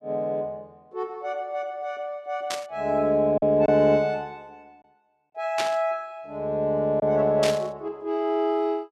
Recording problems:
packet loss; 1% of the sound replaced, filled with silence
static burst; at 2.5 s, at 5.5 s and at 7.5 s; peak +1 dB vs average level

